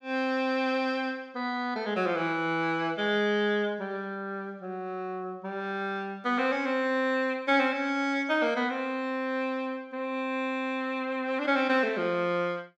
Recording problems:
none

